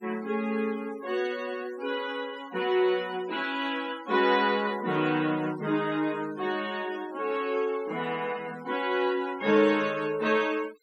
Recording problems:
noise reduction artefacts; signal-to-artefact ratio 20 dB

